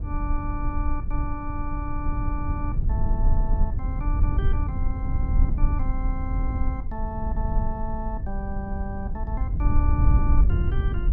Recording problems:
low-frequency rumble; below 74 Hz, SNR -8 dB

